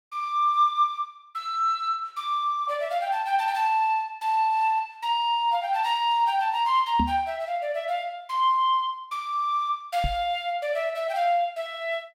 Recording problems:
microphone thump; at 7 s and at 10 s; peak +1 dB vs average level

